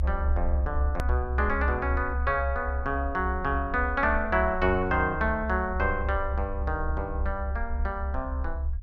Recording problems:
rumble; below 70 Hz, strongest tone 68 Hz, SNR 3 dB
edit click; at 1 s

